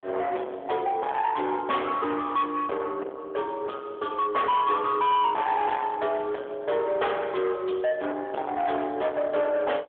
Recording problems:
telephone audio; 320 Hz to 3.5 kHz, AMR-NB
distorted audio; soft clipping, signal-to-distortion ratio 9 dB

